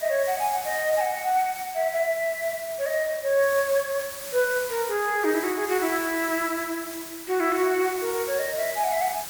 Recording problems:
hiss; slope 0 dB per octave, SNR 10 dB

